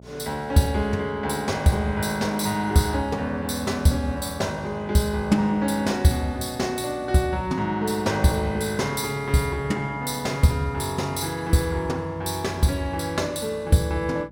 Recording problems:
hum; 60 Hz, harmonics up to 900 Hz, SNR 23 dB

